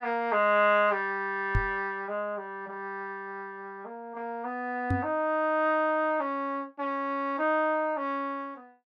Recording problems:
microphone bump; at 1.5 s and at 5 s; peak +4 dB vs average level

